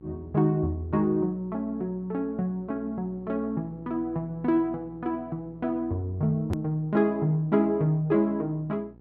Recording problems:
mains hum; 60 Hz, harmonics up to 900 Hz, SNR 23 dB
click at an edit; at 6.5 s

